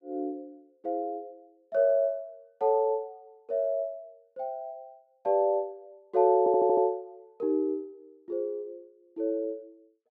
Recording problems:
audio stuttering; at 6.5 s

